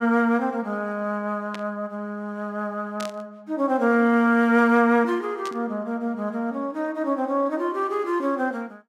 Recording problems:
static burst; at 1.5 s, at 3 s and at 5.5 s; peak -8 dB vs average level

